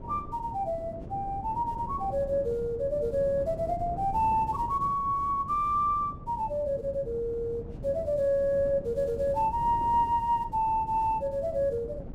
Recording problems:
wind noise; below 270 Hz, SNR 13 dB

